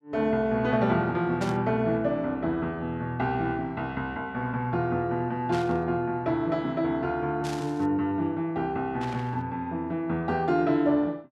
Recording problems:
static burst; 4 times, first at 1.5 s; peak -7 dB vs average level

